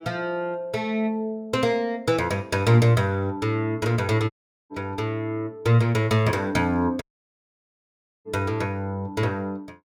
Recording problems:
audio cutting out; at 4.5 s and at 7 s for 1 s

